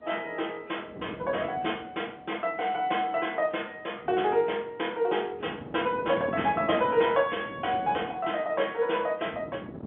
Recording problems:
telephone audio; 240 Hz to 3.5 kHz, G.711
wind on the microphone; below 460 Hz, SNR 14 dB

